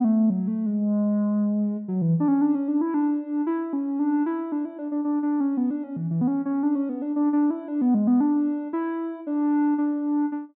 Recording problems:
treble missing; nothing above 4.2 kHz

